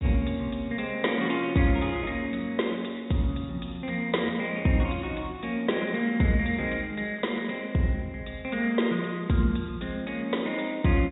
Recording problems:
treble cut off; nothing above 4 kHz

